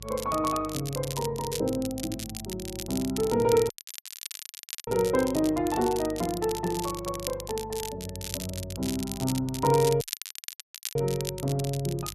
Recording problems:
electrical hum; 50 Hz, harmonics up to 400 Hz, SNR 17 dB
crackling; vinyl, SNR 9 dB
dropout; at 3.5 s for 1 s and at 10 s for 1 s

